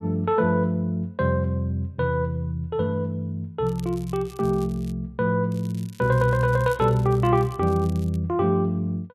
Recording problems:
crackling; from 3.5 to 5 s and from 5.5 to 8 s; loose cable, SNR 25 dB

